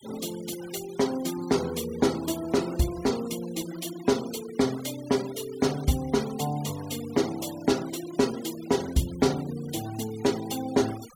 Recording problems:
noise reduction artefacts; signal-to-artefact ratio 16 dB

